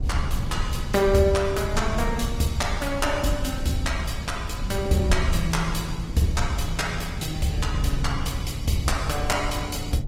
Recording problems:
lossy compression; Opus, log-spectral distance 4 dB, nothing above 16.5 kHz
low-frequency rumble; below 110 Hz, SNR 5 dB

